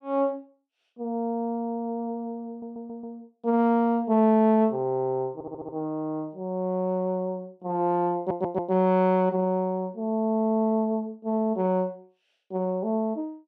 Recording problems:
audio stuttering; at 2.5 s, at 5.5 s and at 8 s

